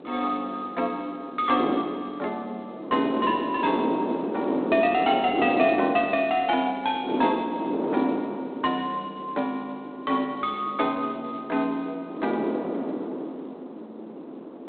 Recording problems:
telephone audio; 240 Hz to 3.6 kHz, G.726
wind on the microphone; below 500 Hz, SNR 3 dB

